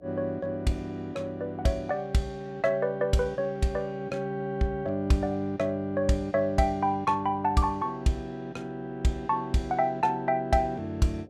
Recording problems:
electrical hum; 60 Hz, harmonics up to 720 Hz, SNR 26 dB

